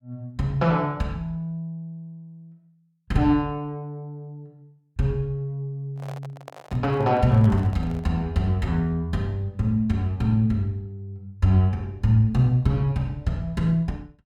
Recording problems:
handling noise; from 6 to 8 s; peak -11 dB vs average level

